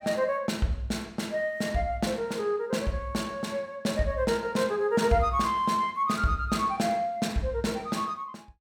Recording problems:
none

